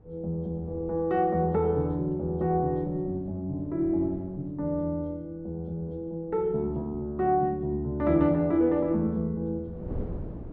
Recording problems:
treble missing; nothing above 8 kHz
wind on the microphone; below 270 Hz, SNR 18 dB

